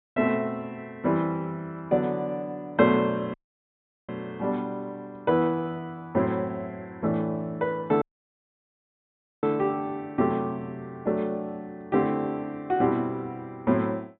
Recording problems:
low-pass filter; nothing above 4 kHz
dropout; at 3.5 s for 0.5 s and at 8 s for 1.5 s

